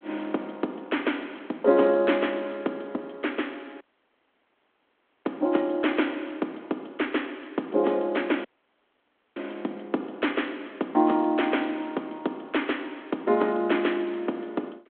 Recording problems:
telephone audio; 220 Hz to 3.4 kHz, G.726
dropout; at 4 s for 1.5 s and at 8.5 s for 1 s

